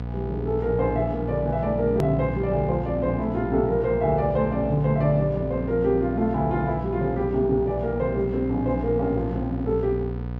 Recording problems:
electrical hum; 60 Hz, harmonics up to 1.2 kHz, SNR 7 dB
edit click; at 2 s

